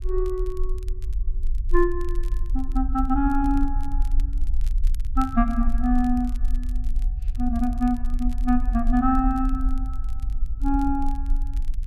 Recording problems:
low-frequency rumble; below 44 Hz, SNR 3 dB
crackle; vinyl, SNR 29 dB

